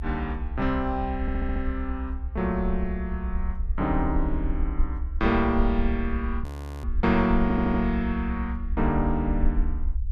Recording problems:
low-frequency rumble; below 66 Hz, SNR 4 dB
audio stuttering; at 1 s and at 7.5 s
audio freezing; at 6.5 s

